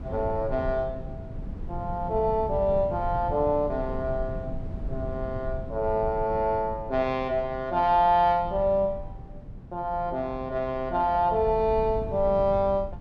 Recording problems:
low-frequency rumble; below 140 Hz, SNR 12 dB

